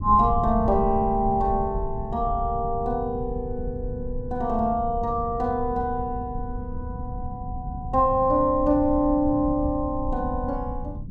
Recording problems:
rumble; below 110 Hz, SNR 9 dB

